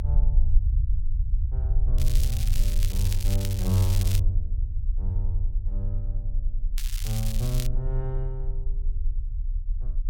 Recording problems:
low-frequency rumble; below 50 Hz, strongest tone 32 Hz, SNR -3 dB
crackle; from 2 to 4 s and at 7 s; loose cable, SNR 6 dB

